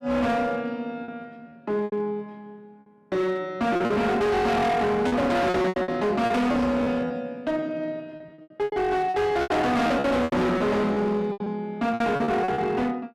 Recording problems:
distorted audio; hard clipping, uneven, signal-to-distortion ratio 7 dB
lost packets; 11% of the sound replaced, filled with repeated pitch periods

